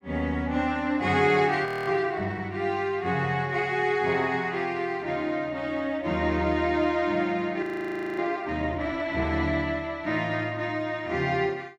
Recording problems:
frozen audio; at 1.5 s and at 7.5 s for 0.5 s

